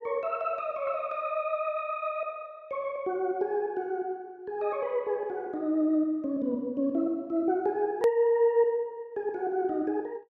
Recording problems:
click at an edit; at 8 s

